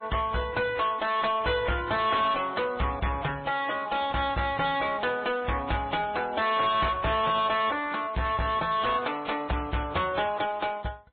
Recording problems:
treble missing; nothing above 3.7 kHz
codec artefacts; MP3, then AAC, log-spectral distance 5 dB
distorted audio; soft clipping, signal-to-distortion ratio 7 dB

